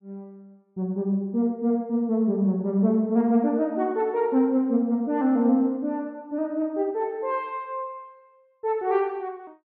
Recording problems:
none

